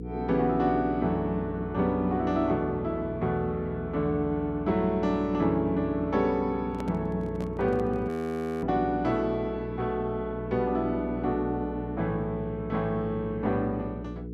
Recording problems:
electrical hum; 60 Hz, harmonics up to 480 Hz, SNR 10 dB
handling noise; from 6.5 to 8 s; peak -7 dB vs average level
frozen audio; at 8 s for 0.5 s

